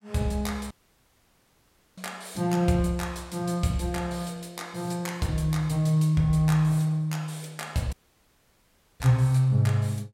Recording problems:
dropout; at 0.5 s for 1.5 s and at 8 s for 1 s

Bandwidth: 16 kHz